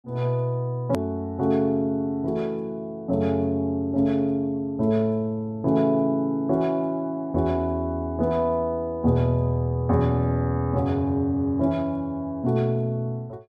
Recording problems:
click at an edit; at 1 s

